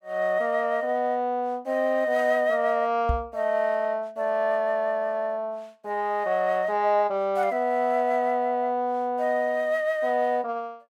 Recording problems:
microphone bump; at 3 s; peak +2 dB vs average level

